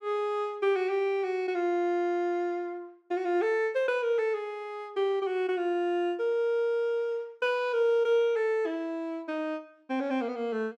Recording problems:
none

